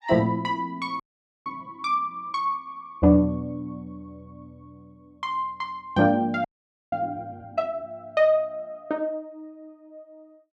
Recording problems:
audio freezing; at 1 s and at 6.5 s

